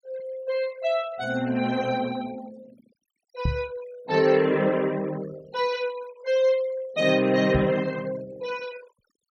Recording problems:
denoising artefacts; signal-to-artefact ratio 22 dB
microphone bump; at 3.5 s and at 7.5 s; peak +2 dB vs average level

